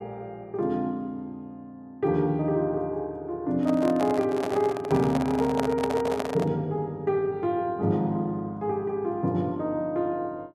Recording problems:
handling noise; from 3.5 to 6.5 s; peak +1 dB vs average level

